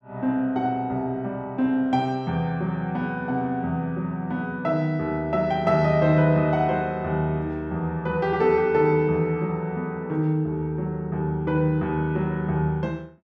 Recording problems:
none

